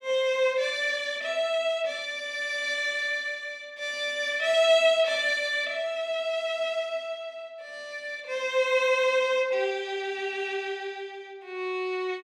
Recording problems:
none

